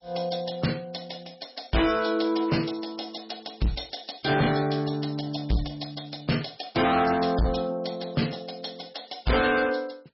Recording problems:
lossy codec; MP3, log-spectral distance 9 dB, nothing above 5.5 kHz
distorted audio; hard clipping, signal-to-distortion ratio 6 dB

